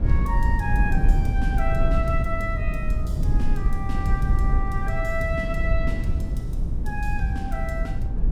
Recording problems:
low-frequency rumble; below 78 Hz, SNR -5 dB

